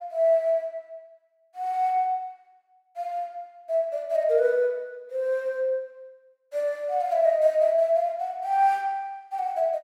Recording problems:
none

